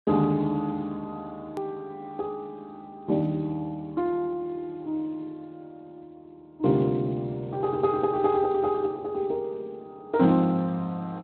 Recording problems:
lossy compression; Speex, log-spectral distance 2 dB, nothing above 13.1 kHz
edit click; at 1.5 s

